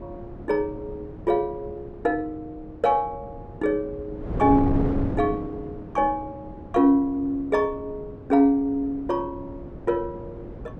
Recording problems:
wind noise; below 330 Hz, SNR 11 dB

